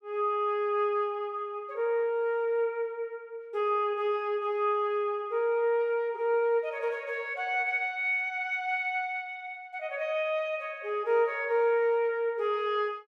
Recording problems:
none

